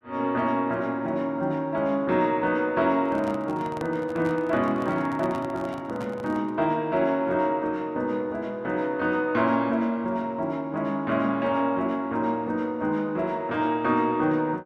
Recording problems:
microphone handling noise; from 3 to 6.5 s; peak -7 dB vs average level

